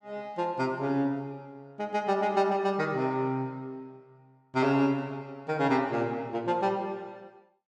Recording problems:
none

